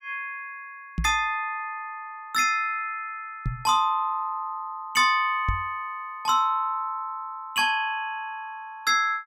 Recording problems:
knock on the microphone; at 1 s, at 3.5 s and at 5.5 s; peak +2 dB vs average level

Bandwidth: 16.5 kHz